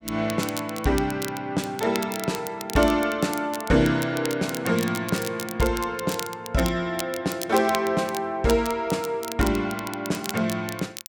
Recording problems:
crackling; vinyl, SNR 11 dB

